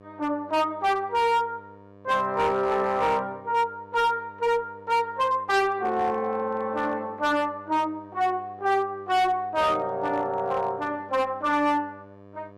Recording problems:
distorted audio; hard clipping, signal-to-distortion ratio 10 dB
hum; 50 Hz, harmonics up to 1.8 kHz, SNR 24 dB

